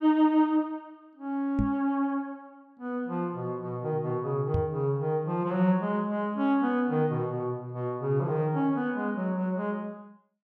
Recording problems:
microphone bump; at 1.5 s and at 4.5 s; peak +3 dB vs average level

